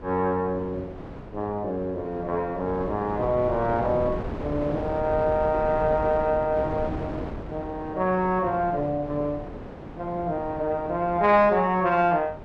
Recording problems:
wind on the microphone; below 590 Hz, SNR 11 dB

